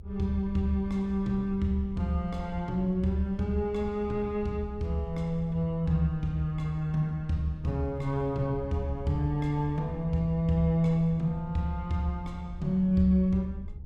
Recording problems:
rumble; below 78 Hz, SNR 13 dB

